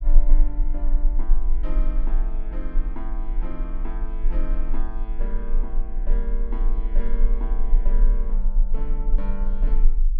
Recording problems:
rumble; below 32 Hz, strongest tone 22 Hz, SNR -12 dB

